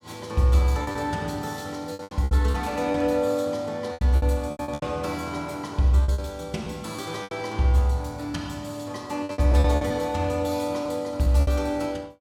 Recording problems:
lost packets; 10% of the sound replaced, filled with repeated pitch periods

